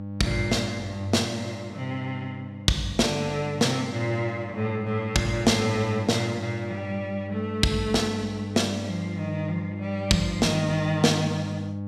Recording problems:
hum; 50 Hz, harmonics up to 800 Hz, SNR 8 dB

